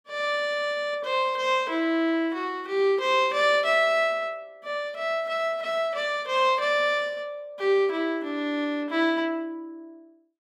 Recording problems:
none

